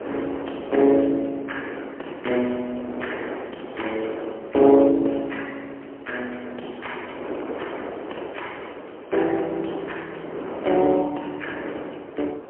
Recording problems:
telephone audio; 260 Hz to 3.2 kHz, AMR-NB, then MP3
distortion; soft clipping, signal-to-distortion ratio 15 dB
wind on the microphone; below 710 Hz, SNR 11 dB

